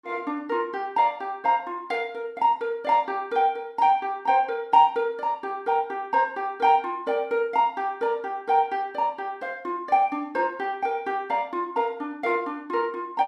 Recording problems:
none

